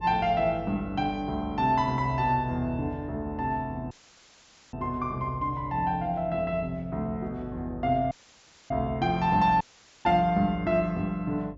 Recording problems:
treble cut off; nothing above 7.5 kHz
hum; 50 Hz, harmonics up to 550 Hz, SNR 18 dB
dropout; at 4 s for 1 s, at 8 s for 0.5 s and at 9.5 s

